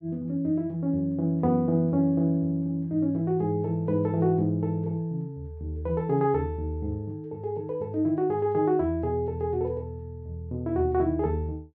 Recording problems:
none

